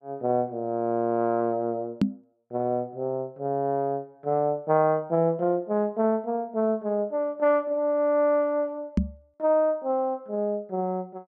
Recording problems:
microphone bump; at 2 s and at 9 s; peak +7 dB vs average level

